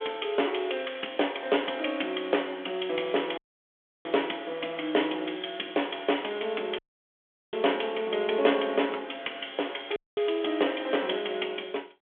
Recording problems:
phone line; 240 Hz to 3.5 kHz, G.726
audio cutting out; at 3.5 s for 0.5 s, at 7 s for 0.5 s and at 10 s

